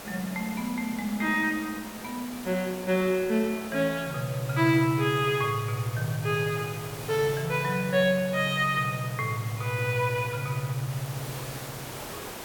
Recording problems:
hiss; slope -4 dB per octave, SNR 12 dB

